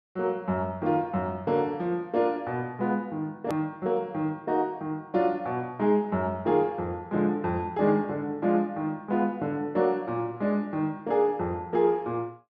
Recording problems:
click at an edit; at 3.5 s

